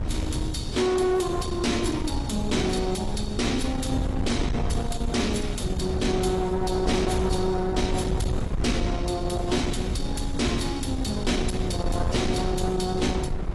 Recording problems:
lossy compression; AAC, log-spectral distance 3 dB, nothing above 11.3 kHz
distortion; soft clipping, signal-to-distortion ratio 11 dB
wind on the microphone; below 220 Hz, SNR 4 dB

